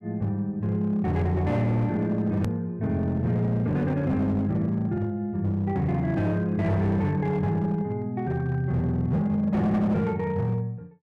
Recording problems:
distortion; hard clipping, signal-to-distortion ratio 11 dB
hard cut with a click; at 2.5 s

